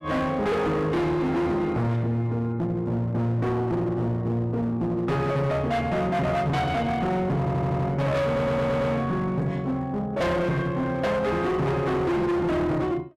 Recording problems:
distortion; hard clipping, uneven, signal-to-distortion ratio 7 dB
stutter; at 7.5 s and at 8.5 s

